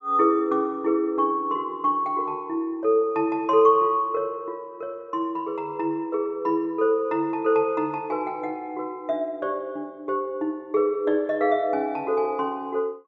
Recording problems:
low-pass filter; nothing above 8 kHz

